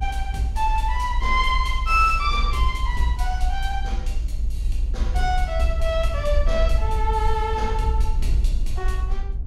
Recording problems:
low-frequency rumble; below 56 Hz, SNR 1 dB

